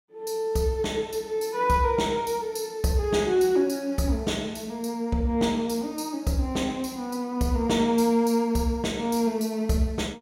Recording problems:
none

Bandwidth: 16 kHz